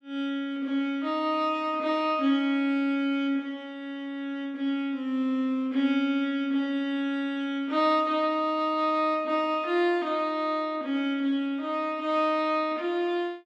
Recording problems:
none

